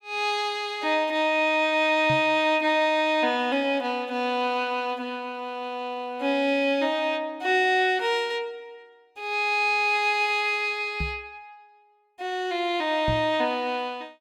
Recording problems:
microphone bump; at 2 s, at 11 s and at 13 s; peak -2 dB vs average level

